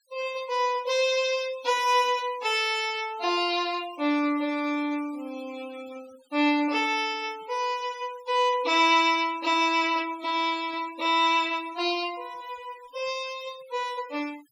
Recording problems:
noise reduction artefacts; signal-to-artefact ratio 21 dB

